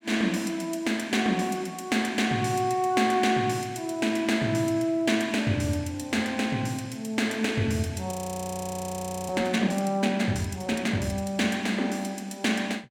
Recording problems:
frozen audio; at 8 s for 1 s

